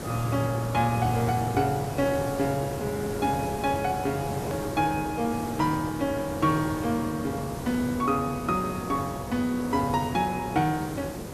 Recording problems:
hiss; SNR 8 dB
hard cut with a click; at 4.5 s

